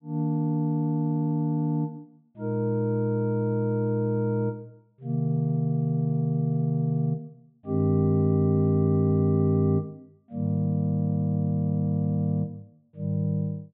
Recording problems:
treble cut off; nothing above 4 kHz

